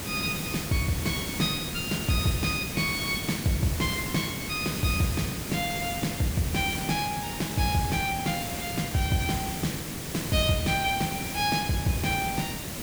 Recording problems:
background hiss; SNR 5 dB

